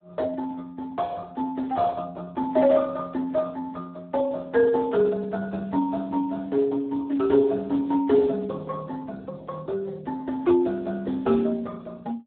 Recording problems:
telephone audio; 220 Hz to 2 kHz, Speex

